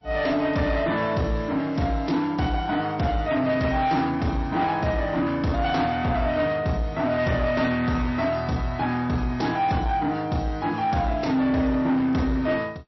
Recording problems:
lossy codec; MP3, log-spectral distance 2 dB, nothing above 5.7 kHz
distortion; soft clipping, signal-to-distortion ratio 11 dB

